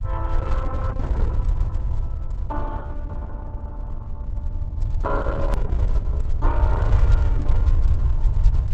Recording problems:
codec artefacts; Opus, log-spectral distance 2 dB
low-frequency rumble; below 74 Hz, SNR -10 dB
hard cut with a click; at 5.5 s

